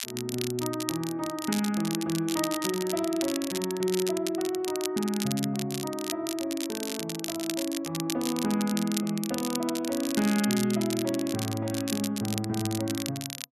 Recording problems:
crackling; vinyl, SNR 6 dB

